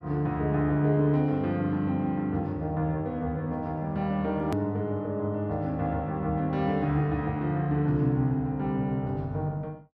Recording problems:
edit click; at 4.5 s

